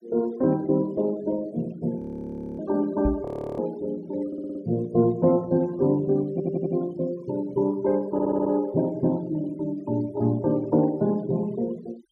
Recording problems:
denoising artefacts; signal-to-artefact ratio 24 dB
frozen audio; at 2 s for 0.5 s and at 3.5 s
microphone bump; at 3 s; peak 0 dB vs average level
stutter; at 4.5 s, at 6.5 s and at 8 s

